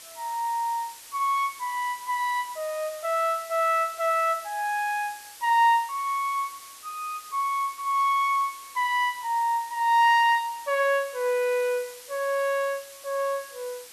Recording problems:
hiss; slope +2 dB per octave, SNR 18 dB

